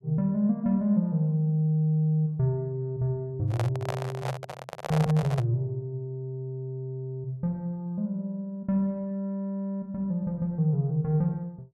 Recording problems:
microphone handling noise; from 3.5 to 5.5 s; peak 0 dB vs average level

